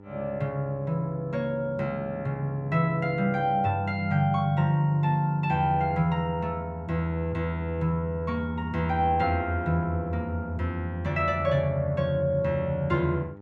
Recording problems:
electrical hum; 50 Hz, harmonics up to 1.4 kHz, SNR 20 dB

